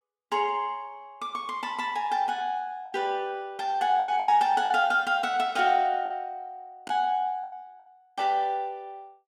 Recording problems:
lost packets; 5% of the sound replaced, filled with the last packet

